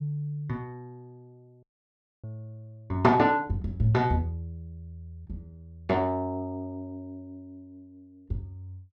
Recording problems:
audio cutting out; at 1.5 s for 0.5 s

